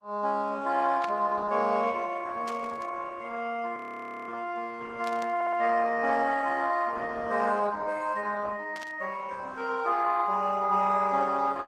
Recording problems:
codec artefacts; Opus, log-spectral distance 3 dB
burst of static; 4 times, first at 1 s; peak -9 dB vs average level
audio freezing; at 4 s for 0.5 s
stutter; at 5.5 s

